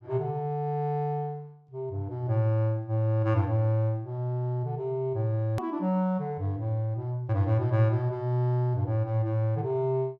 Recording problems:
click at an edit; at 5.5 s

